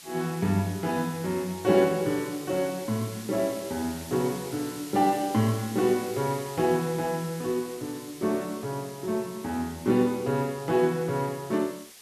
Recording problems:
background hiss; slope +2 dB per octave, SNR 15 dB

